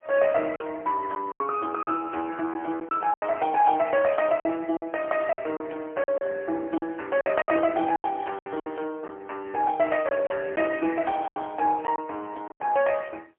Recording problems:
telephone audio; 280 Hz to 3.2 kHz, AMR-NB, then MP3
packet loss; 9% of the sound replaced, filled with silence

